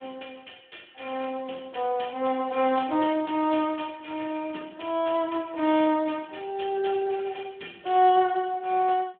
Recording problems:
telephone audio; 220 Hz to 3.5 kHz, Speex

